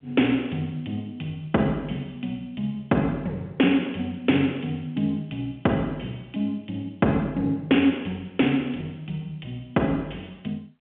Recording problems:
phone line; 190 Hz to 3.4 kHz, G.711

